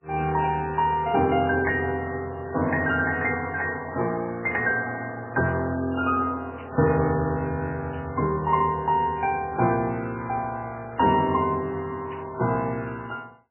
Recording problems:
lossy compression; MP3, log-spectral distance 3 dB, nothing above 2.8 kHz
static burst; 5 times, first at 2 s; peak -14 dB vs average level

